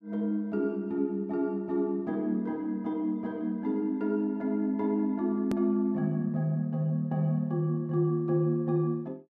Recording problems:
click at an edit; at 5.5 s

